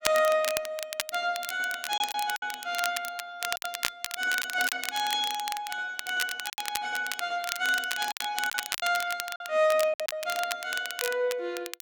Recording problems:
crackle; vinyl, SNR 6 dB
lost packets; 6% of the sound replaced, filled with silence

